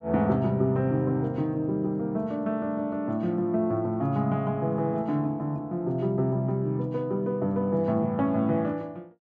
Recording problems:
none

